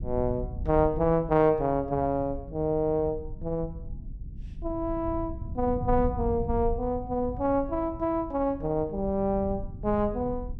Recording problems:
low-frequency rumble; below 100 Hz, SNR 11 dB

